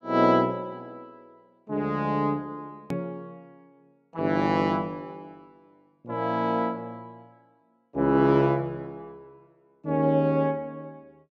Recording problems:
hard cut with a click; at 3 s

